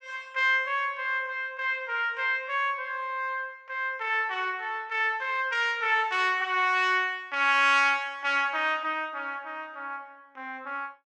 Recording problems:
none

